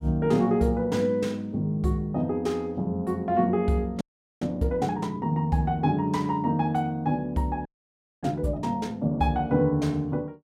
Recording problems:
frozen audio; at 4 s and at 7.5 s for 0.5 s

